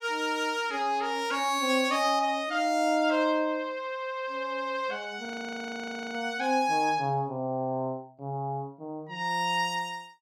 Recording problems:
audio freezing; at 5.5 s for 1 s

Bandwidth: 17.5 kHz